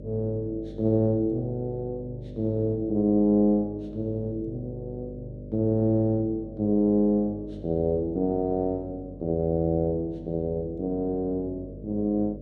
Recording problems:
hum; 50 Hz, harmonics up to 600 Hz, SNR 15 dB

